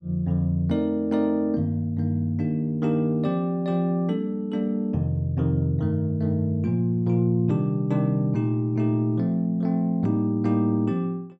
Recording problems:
none

